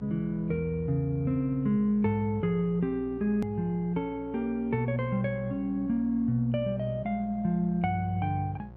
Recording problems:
hum; 60 Hz, harmonics up to 1.1 kHz, SNR 19 dB
click at an edit; at 3.5 s

